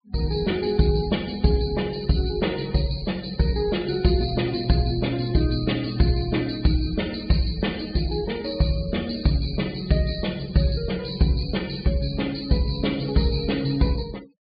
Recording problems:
low-pass filter; nothing above 4.6 kHz
noise reduction artefacts; signal-to-artefact ratio 20 dB

